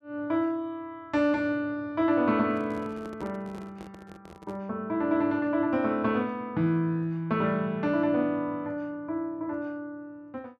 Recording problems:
handling noise; from 2.5 to 4.5 s; peak -10 dB vs average level

